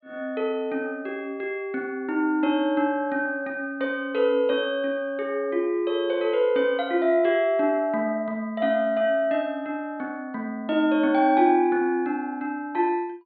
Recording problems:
treble cut off; nothing above 4.4 kHz

